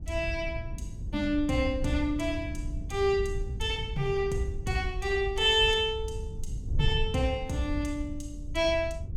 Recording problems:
wind noise; below 88 Hz, SNR 8 dB

